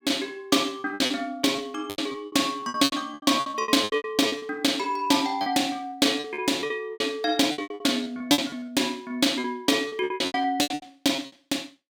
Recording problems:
lost packets; 19% of the sound replaced, filled with repeated pitch periods

